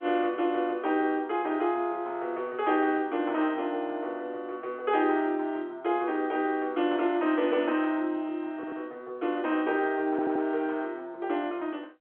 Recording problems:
telephone audio; 260 Hz to 3.4 kHz, G.711
stutter; at 8.5 s and at 10 s

